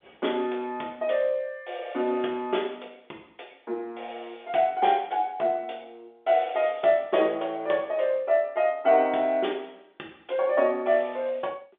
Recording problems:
phone line; 280 Hz to 3.6 kHz, G.711

